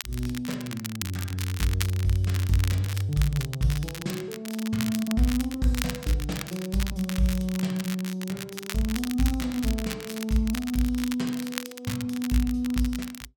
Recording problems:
crackling; vinyl, SNR 9 dB

